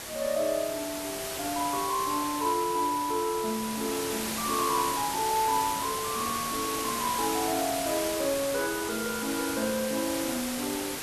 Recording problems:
background hiss; slope -2 dB per octave, SNR 3 dB

